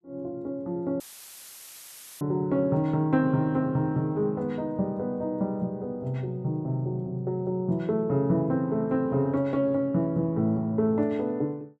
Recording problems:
dropout; at 1 s for 1 s; filled with static

